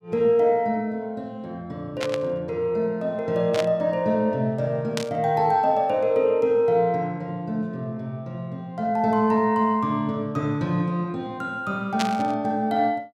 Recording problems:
static burst; 4 times, first at 2 s; peak 0 dB vs average level

